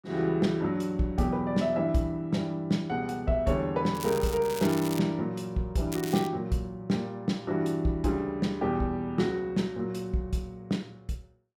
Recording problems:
crackling; from 4 to 5 s and at 6 s; loose cable, SNR 12 dB

